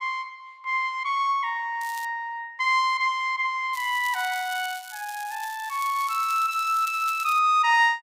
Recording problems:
crackle; at 2 s and from 3.5 to 7.5 s; loose cable, SNR 16 dB

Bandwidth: 15.5 kHz